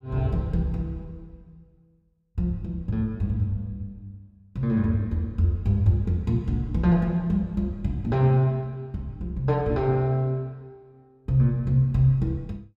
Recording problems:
none

